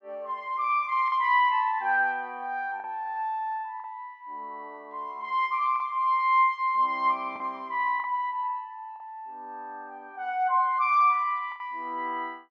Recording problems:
lost packets; 3% of the sound replaced, filled with the last packet

